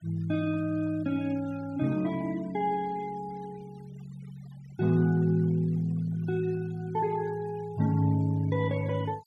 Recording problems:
denoising artefacts; signal-to-artefact ratio 24 dB

